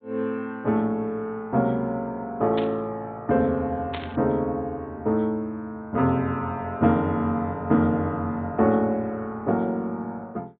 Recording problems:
low-pass filter; nothing above 4 kHz
burst of static; at 2.5 s and at 4 s; peak -5 dB vs average level

